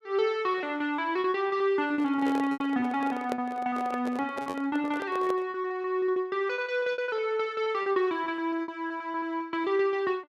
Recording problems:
packet loss; 14% of the sound replaced, filled with repeated pitch periods
microphone handling noise; from 2 to 5.5 s; peak -1 dB vs average level

